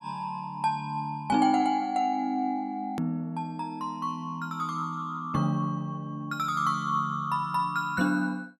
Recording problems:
edit click; at 3 s

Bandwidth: 13.5 kHz